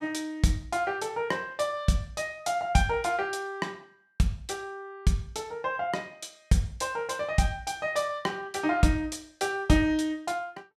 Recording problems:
none

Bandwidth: 14.5 kHz